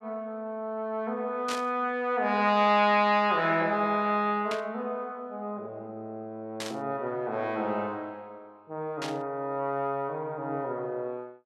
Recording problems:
burst of static; 4 times, first at 1.5 s; peak -2 dB vs average level

